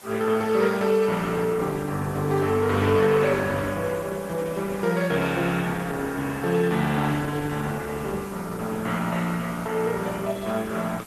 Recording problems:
lossy codec; Opus, log-spectral distance 6 dB
background hiss; SNR 20 dB

